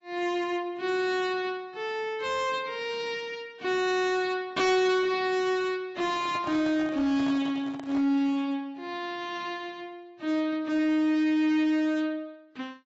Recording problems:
lossy compression; AAC, log-spectral distance 2 dB, nothing above 7.3 kHz
distortion; hard clipping, signal-to-distortion ratio 10 dB
microphone handling noise; from 6 to 8 s; peak -8 dB vs average level

